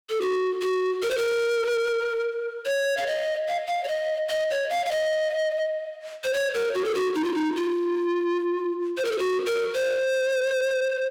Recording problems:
distorted audio; soft clipping, signal-to-distortion ratio 7 dB

